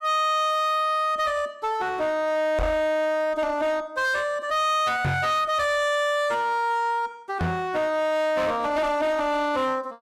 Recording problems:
distortion; hard clipping, uneven, signal-to-distortion ratio 9 dB
knock on the microphone; at 2.5 s, at 5 s and at 7.5 s; peak +2 dB vs average level

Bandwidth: 14.5 kHz